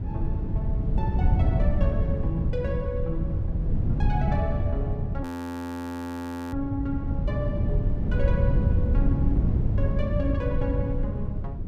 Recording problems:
wind on the microphone; below 120 Hz, SNR -7 dB
frozen audio; at 5 s for 1.5 s

